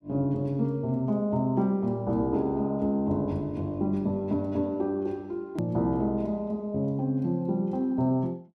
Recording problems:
click at an edit; at 5.5 s

